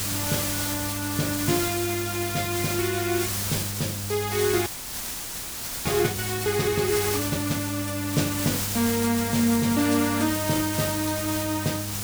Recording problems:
hum; 50 Hz, harmonics up to 700 Hz, SNR 9 dB
hiss; slope 0 dB per octave, SNR 2 dB
audio freezing; at 4.5 s for 1 s

